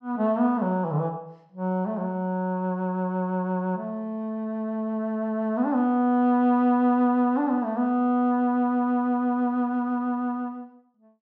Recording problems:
none

